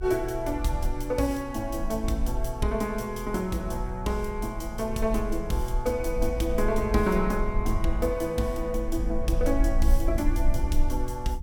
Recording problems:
rumble; below 48 Hz, SNR 4 dB

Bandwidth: 17.5 kHz